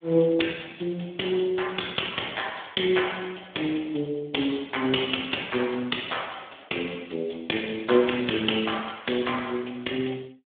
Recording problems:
telephone audio; 190 Hz to 3.6 kHz, Speex

